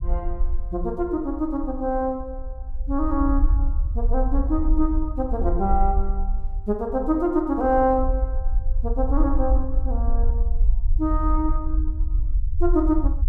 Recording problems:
rumble; below 52 Hz, SNR 1 dB

